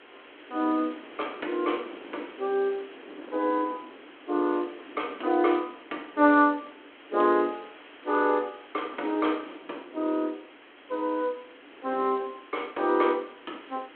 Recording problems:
phone line; 260 Hz to 3.5 kHz, G.726
hiss; SNR 21 dB
wind noise; below 580 Hz, SNR 20 dB

